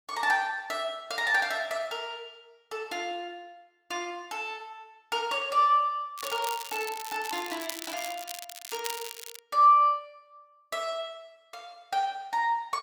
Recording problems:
crackle; from 6 to 9.5 s; loose cable, SNR 11 dB

